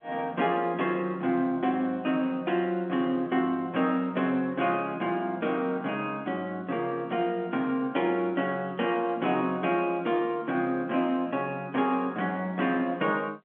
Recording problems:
telephone audio; 220 Hz to 3.4 kHz, G.711

